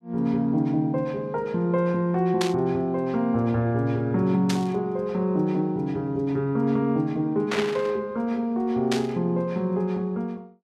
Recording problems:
static burst; 4 times, first at 2.5 s; peak 0 dB vs average level

